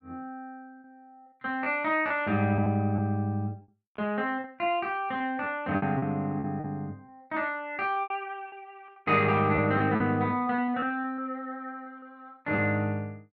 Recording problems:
lost packets; 8% of the sound replaced, filled with repeated pitch periods

